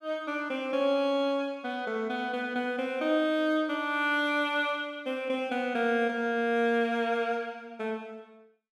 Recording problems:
none

